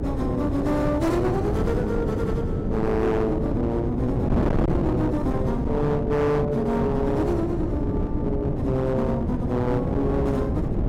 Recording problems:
distortion; hard clipping, uneven, signal-to-distortion ratio 6 dB
mains hum; 60 Hz, harmonics up to 540 Hz, SNR 18 dB
wind noise; below 330 Hz, SNR 2 dB

